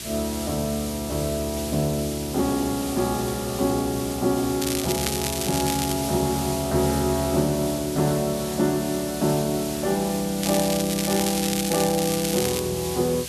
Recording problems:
electrical hum; 60 Hz, harmonics up to 660 Hz, SNR 20 dB
hiss; SNR 8 dB
crackle; from 4.5 to 6 s and from 10 to 13 s; loose cable, SNR 4 dB

